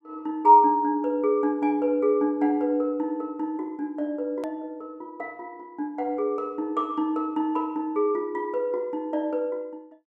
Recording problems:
click at an edit; at 4.5 s

